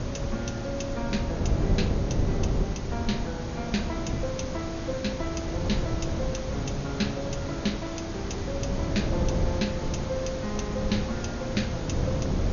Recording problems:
low-pass filter; nothing above 6.8 kHz
background hiss; slope -5 dB per octave, SNR 5 dB
wind noise; below 210 Hz, SNR -1 dB

